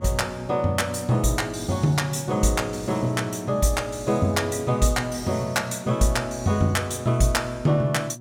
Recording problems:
hum; 60 Hz, harmonics up to 720 Hz, SNR 17 dB

